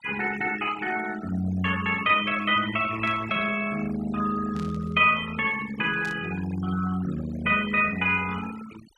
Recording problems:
denoising artefacts; signal-to-artefact ratio 15 dB
static burst; at 3 s, at 4.5 s and at 6 s; peak -14 dB vs average level

